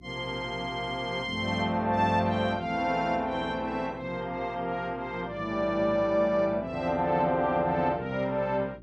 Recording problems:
hum; 60 Hz, harmonics up to 360 Hz, SNR 20 dB

